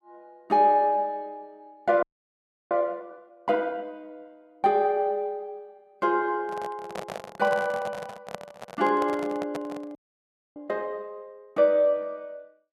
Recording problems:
audio freezing; at 2 s for 0.5 s and at 10 s for 0.5 s
microphone handling noise; from 6.5 to 11 s; peak -4 dB vs average level

